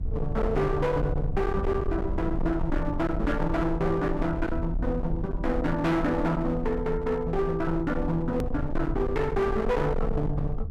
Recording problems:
distortion; hard clipping, uneven, signal-to-distortion ratio 7 dB
low-frequency rumble; below 110 Hz, SNR 6 dB
hard cut with a click; at 8.5 s

